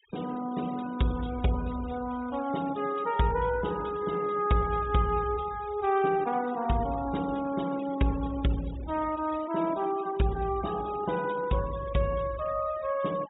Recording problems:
low-pass filter; nothing above 4 kHz
denoising artefacts; signal-to-artefact ratio 19 dB

